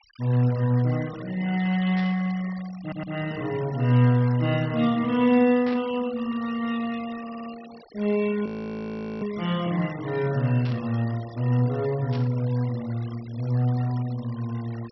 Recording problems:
treble cut off; nothing above 5.7 kHz
denoising artefacts; signal-to-artefact ratio 19 dB
static burst; 4 times, first at 2 s; peak -10 dB vs average level
audio stuttering; at 3 s and at 7 s
frozen audio; at 8.5 s for 1 s

